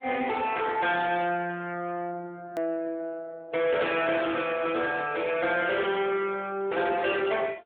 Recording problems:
phone line; 190 Hz to 3.5 kHz, AMR-NB
distortion; soft clipping, signal-to-distortion ratio 12 dB
click at an edit; at 2.5 s

